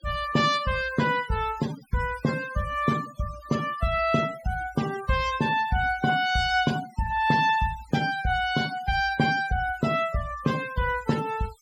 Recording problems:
denoising artefacts; signal-to-artefact ratio 15 dB

